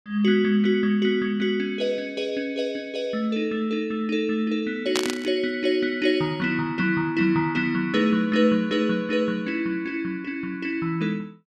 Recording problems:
burst of static; at 5 s; peak +3 dB vs average level

